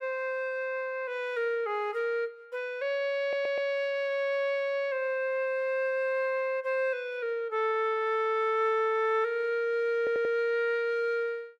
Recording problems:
audio stuttering; at 3 s and at 10 s

